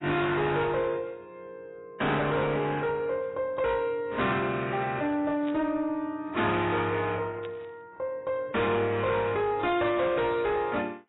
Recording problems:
lossy codec; AAC, log-spectral distance 2 dB, nothing above 3.8 kHz
distorted audio; soft clipping, signal-to-distortion ratio 10 dB
burst of static; at 5.5 s and at 7.5 s; peak -13 dB vs average level

